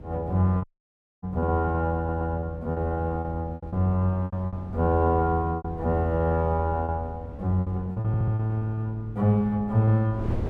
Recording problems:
hum; 50 Hz, harmonics up to 650 Hz, SNR 21 dB
wind on the microphone; below 280 Hz, SNR 18 dB
lost packets; 10% of the sound replaced, filled with repeated pitch periods
audio cutting out; at 0.5 s for 0.5 s
audio stuttering; at 2 s and at 8 s

